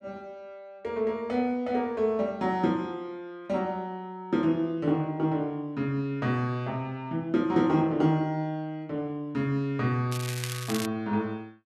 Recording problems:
crackle; at 10 s; loose cable, SNR 8 dB

